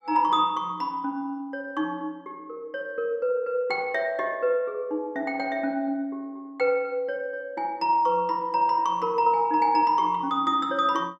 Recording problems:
none

